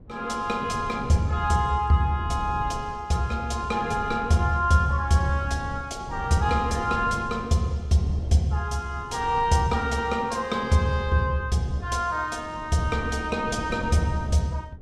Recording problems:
wind on the microphone; below 190 Hz, SNR 14 dB

